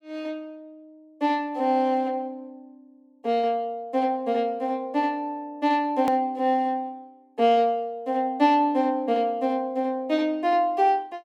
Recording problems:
hard cut with a click; at 6 s

